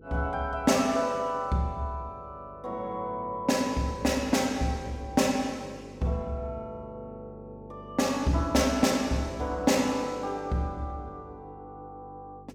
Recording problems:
hum; 50 Hz, harmonics up to 500 Hz, SNR 20 dB

